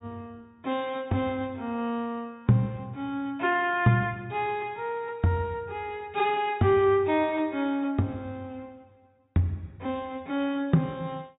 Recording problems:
treble cut off; nothing above 4 kHz

